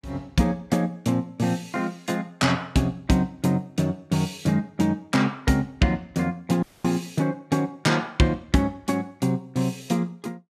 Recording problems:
dropout; at 6.5 s

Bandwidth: 14.5 kHz